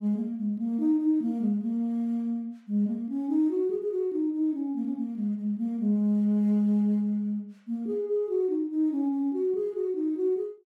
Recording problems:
none

